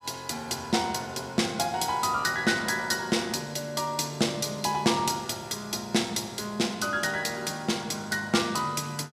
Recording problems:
none

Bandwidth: 14.5 kHz